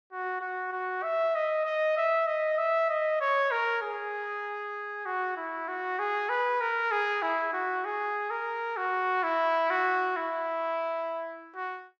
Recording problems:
none

